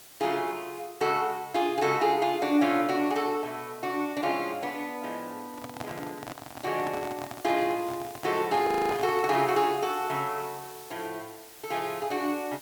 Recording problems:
background hiss; slope -1 dB per octave, SNR 19 dB
handling noise; from 5.5 to 9.5 s; peak -4 dB vs average level
frozen audio; at 8.5 s

